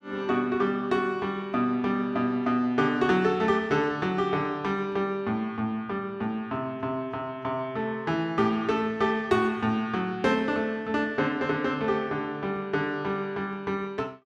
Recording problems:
none

